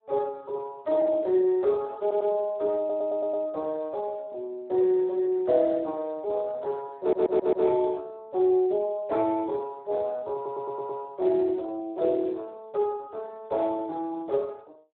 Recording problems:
telephone audio; 300 Hz to 2.2 kHz, Speex
audio stuttering; 4 times, first at 2 s

